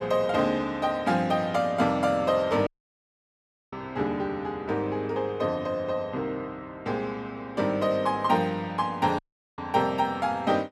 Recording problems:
audio cutting out; at 2.5 s for 1 s and at 9 s

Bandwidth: 14.5 kHz